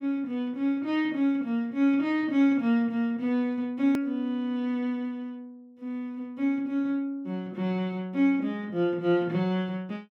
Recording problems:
click at an edit; at 4 s

